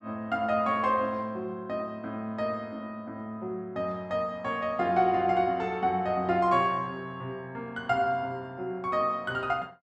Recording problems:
none

